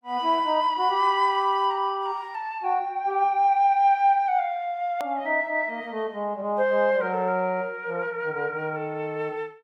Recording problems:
click at an edit; at 5 s

